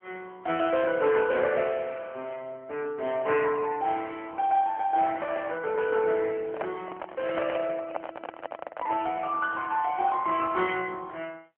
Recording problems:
telephone audio; 260 Hz to 3.1 kHz, AMR-NB
microphone handling noise; from 6.5 to 9 s; peak 0 dB vs average level

